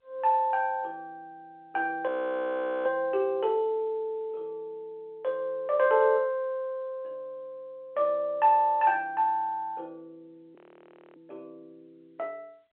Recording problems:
phone line; 280 Hz to 3.4 kHz, G.711
frozen audio; at 2 s for 1 s and at 11 s for 0.5 s

